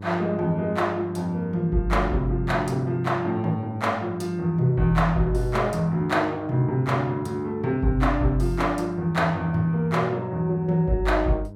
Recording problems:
hum; 50 Hz, harmonics up to 900 Hz, SNR 15 dB

